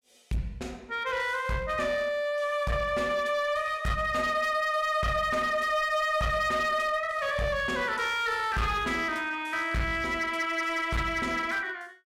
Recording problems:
distortion; hard clipping, uneven, signal-to-distortion ratio 10 dB

